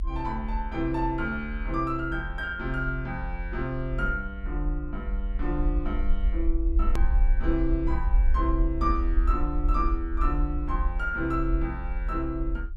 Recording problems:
low-frequency rumble; below 56 Hz, SNR 0 dB
hard cut with a click; at 7 s

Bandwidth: 12.5 kHz